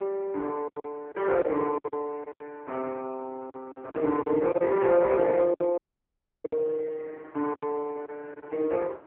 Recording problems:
phone line; 260 Hz to 3.2 kHz, AMR-NB
wind on the microphone; below 960 Hz, SNR 25 dB
lost packets; 10% of the sound replaced, filled with silence
audio cutting out; at 6 s for 0.5 s

